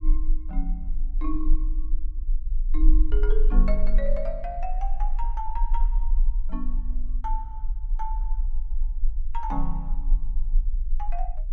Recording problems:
low-frequency rumble; below 34 Hz, strongest tone 22 Hz, SNR -7 dB

